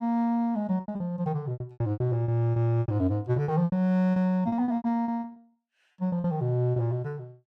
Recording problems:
lost packets; 17% of the sound replaced, filled with repeated pitch periods

